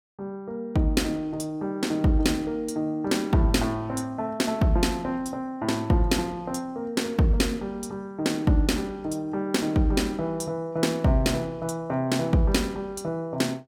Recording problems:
none

